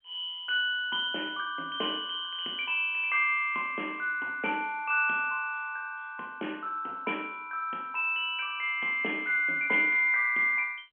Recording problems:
telephone audio; 220 Hz to 3.3 kHz, G.711

